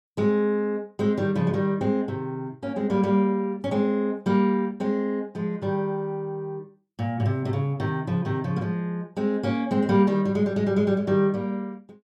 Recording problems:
none

